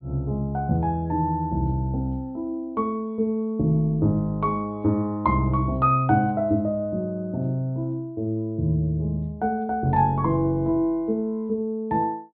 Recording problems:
low-pass filter; nothing above 4.4 kHz

